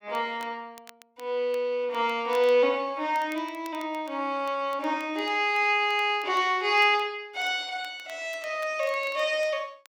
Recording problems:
crackling; vinyl, SNR 26 dB

